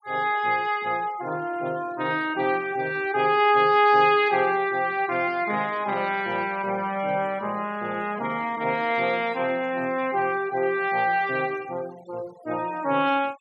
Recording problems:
denoising artefacts; signal-to-artefact ratio 24 dB

